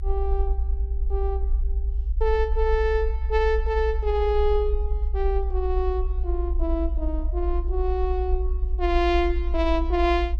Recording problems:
rumble; below 58 Hz, SNR 1 dB

